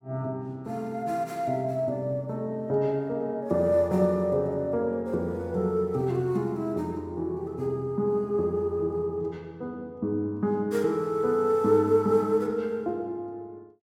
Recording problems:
none

